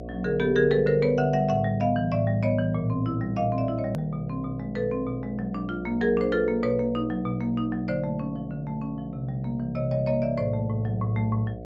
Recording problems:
treble cut off; nothing above 8 kHz
hum; 60 Hz, harmonics up to 720 Hz, SNR 15 dB
click at an edit; at 4 s

